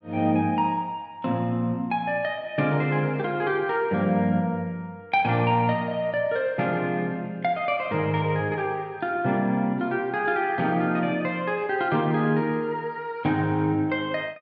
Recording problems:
none

